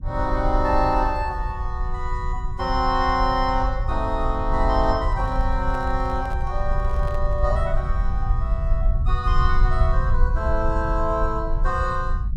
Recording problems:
rumble; below 62 Hz, SNR 1 dB
handling noise; from 5 to 7.5 s; peak -11 dB vs average level

